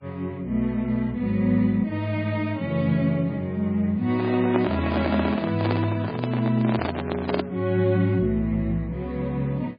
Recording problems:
lossy compression; MP3, log-spectral distance 2 dB, nothing above 4.4 kHz
microphone handling noise; from 4 to 7.5 s; peak +2 dB vs average level

